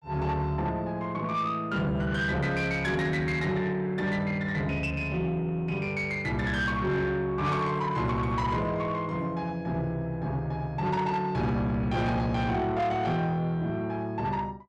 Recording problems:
distorted audio; soft clipping, signal-to-distortion ratio 11 dB

